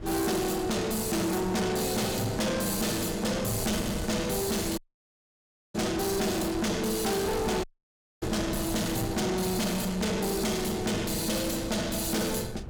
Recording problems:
distorted audio; soft clipping, signal-to-distortion ratio 7 dB
wind on the microphone; below 350 Hz, SNR 12 dB
dropout; at 5 s for 1 s and at 7.5 s for 0.5 s

